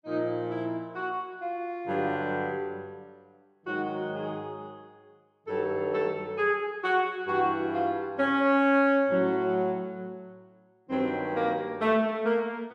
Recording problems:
none

